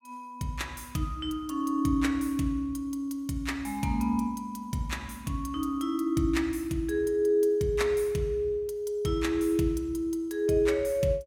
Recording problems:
none

